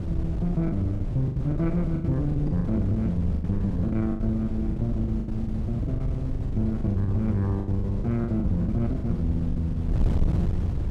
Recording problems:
distorted audio; soft clipping, signal-to-distortion ratio 10 dB
wind on the microphone; below 130 Hz, SNR 3 dB
packet loss; 14% of the sound replaced, filled with the last packet

